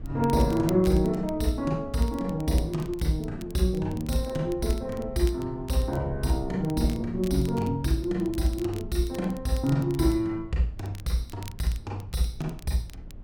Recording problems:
rumble; below 110 Hz, SNR 16 dB
crackling; vinyl, SNR 22 dB

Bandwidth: 17 kHz